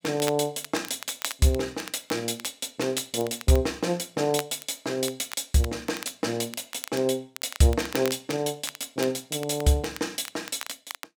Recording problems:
crackling; vinyl, SNR 13 dB

